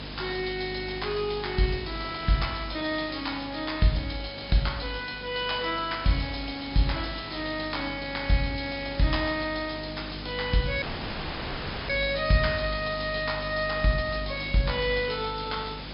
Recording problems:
low-pass filter; nothing above 5.5 kHz
electrical hum; 50 Hz, harmonics up to 300 Hz, SNR 14 dB
background hiss; slope -2 dB per octave, SNR 12 dB
dropout; at 11 s for 1 s

